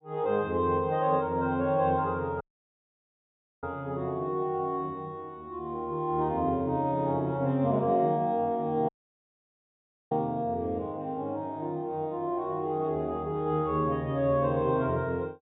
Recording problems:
treble cut off; nothing above 4 kHz
audio cutting out; at 2.5 s for 1 s and at 9 s for 1 s

